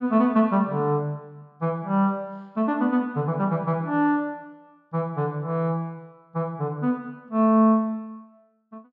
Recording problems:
none

